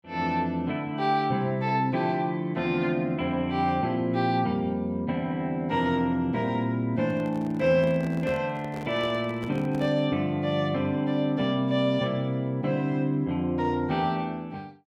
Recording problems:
handling noise; from 7 to 10 s; peak -9 dB vs average level

